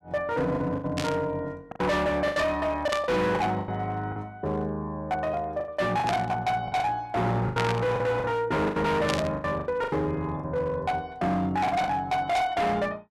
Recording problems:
distorted audio; hard clipping, signal-to-distortion ratio 7 dB
packet loss; 10% of the sound replaced, filled with the last packet
burst of static; 5 times, first at 1 s; peak +1 dB vs average level

